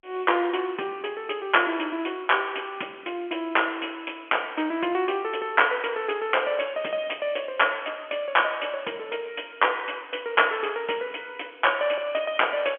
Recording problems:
phone line; 240 Hz to 3.3 kHz, G.711

